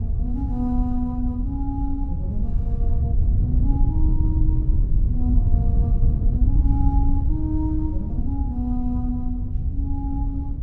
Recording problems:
wind noise; below 84 Hz, SNR -7 dB

